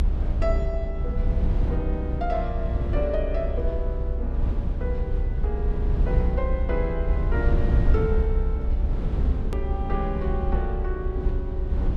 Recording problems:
rumble; below 66 Hz, strongest tone 32 Hz, SNR -5 dB
edit click; at 9.5 s

